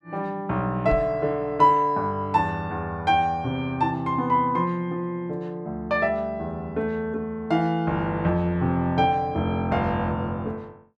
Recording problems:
knock on the microphone; at 1 s; peak -2 dB vs average level

